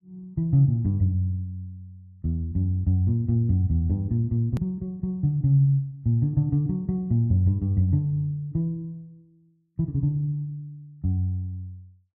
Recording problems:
edit click; at 4.5 s

